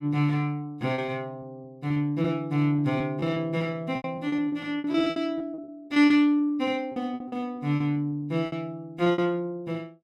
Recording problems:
packet loss; 13% of the sound replaced, filled with repeated pitch periods

